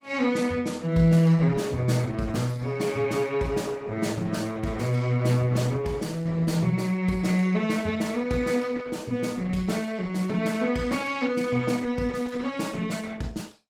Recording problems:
lossy compression; Opus, log-spectral distance 4 dB, nothing above 19 kHz

